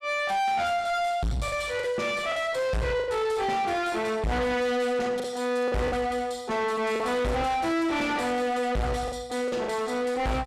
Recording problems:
distortion; soft clipping, signal-to-distortion ratio 5 dB
lost packets; 5% of the sound replaced, filled with the last packet

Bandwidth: 13.5 kHz